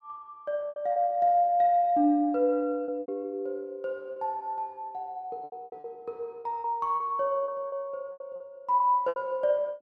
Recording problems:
lost packets; 10% of the sound replaced, filled with repeated pitch periods

